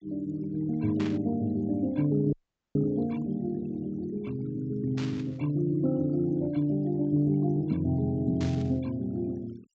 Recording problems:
treble cut off; nothing above 8 kHz
noise reduction artefacts; signal-to-artefact ratio 26 dB
burst of static; at 1 s, at 5 s and at 8.5 s; peak -8 dB vs average level
audio cutting out; at 2.5 s

